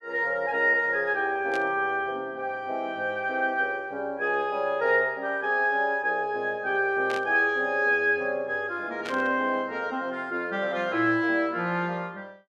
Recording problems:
burst of static; at 1.5 s, at 7 s and at 9 s; peak -7 dB vs average level

